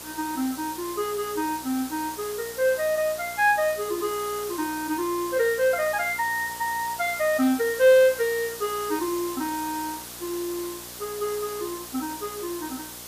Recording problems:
electrical hum; 60 Hz, harmonics up to 2.3 kHz, SNR 24 dB
background hiss; slope 0 dB per octave, SNR 11 dB

